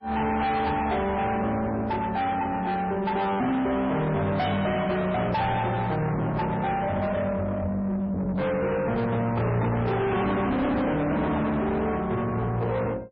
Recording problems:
lossy compression; MP3, log-spectral distance 2 dB, nothing above 5.2 kHz
distortion; soft clipping, signal-to-distortion ratio 6 dB

